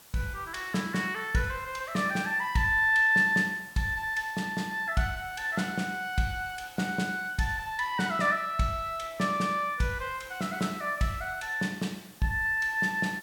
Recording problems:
background hiss; slope -1 dB per octave, SNR 23 dB

